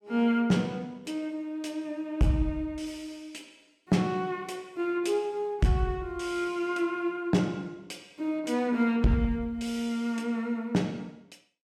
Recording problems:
distorted audio; hard clipping, signal-to-distortion ratio 11 dB

